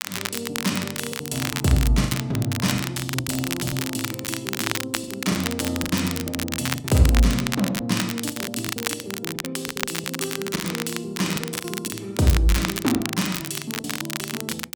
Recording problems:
crackling; vinyl, SNR 4 dB
packet loss; 11% of the sound replaced, filled with the last packet

